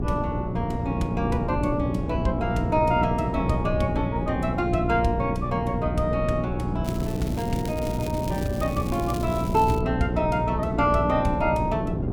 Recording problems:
electrical hum; 60 Hz, harmonics up to 720 Hz, SNR 4 dB
wind on the microphone; below 320 Hz, SNR 4 dB
crackle; from 7 to 10 s; loose cable, SNR 16 dB

